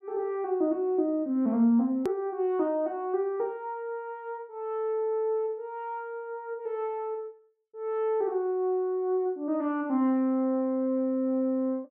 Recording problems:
edit click; at 2 s

